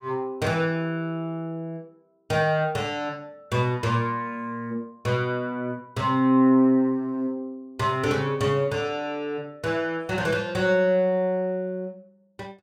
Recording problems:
none

